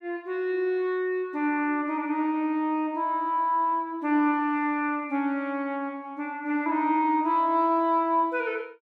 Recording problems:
none

